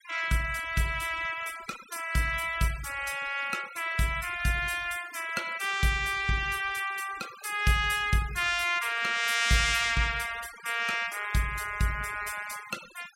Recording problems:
denoising artefacts; signal-to-artefact ratio 17 dB

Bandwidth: 16 kHz